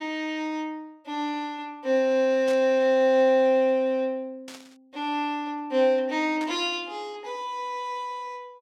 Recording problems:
burst of static; at 2.5 s, at 4.5 s and at 6.5 s; peak -11 dB vs average level

